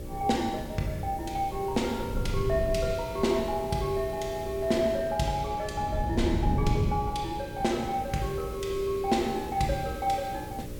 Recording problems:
electrical hum; 60 Hz, harmonics up to 600 Hz, SNR 14 dB
background hiss; slope -1 dB per octave, SNR 21 dB
wind on the microphone; below 150 Hz, SNR 7 dB

